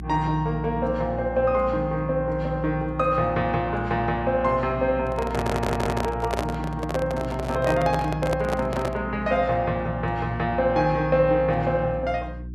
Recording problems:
mains hum; 60 Hz, harmonics up to 360 Hz, SNR 11 dB
microphone handling noise; from 5 to 9 s; peak +1 dB vs average level
audio stuttering; at 5.5 s

